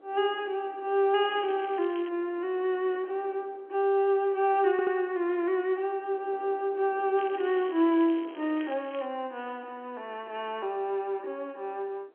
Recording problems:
telephone audio; 280 Hz to 3.7 kHz, G.711
wind noise; below 690 Hz, SNR 24 dB
crackle; at 1 s and from 7 to 9 s; loose cable, SNR 22 dB
audio stuttering; at 4.5 s

